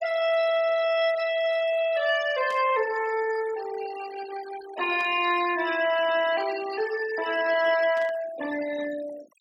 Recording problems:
noise reduction artefacts; signal-to-artefact ratio 13 dB
burst of static; at 2.5 s, at 5 s and at 8 s; peak -15 dB vs average level

